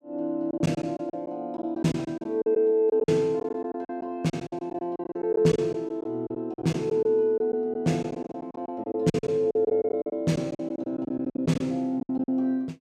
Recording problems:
lost packets; 15% of the sound replaced, filled with silence

